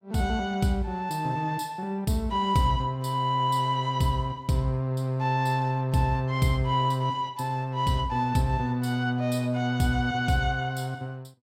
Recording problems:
none

